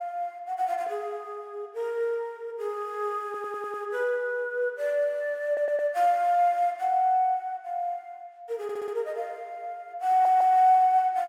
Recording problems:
stutter; 4 times, first at 3.5 s

